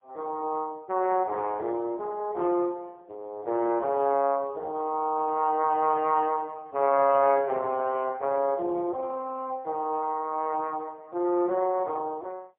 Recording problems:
phone line; 300 Hz to 2 kHz, AMR-NB, then MP3

